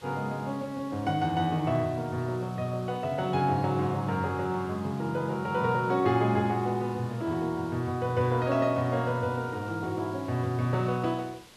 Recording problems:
background hiss; slope -2 dB per octave, SNR 23 dB

